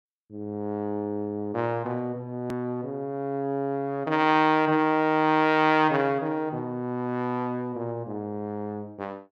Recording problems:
hard cut with a click; at 2.5 s

